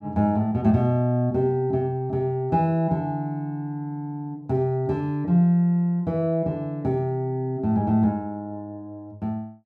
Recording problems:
none

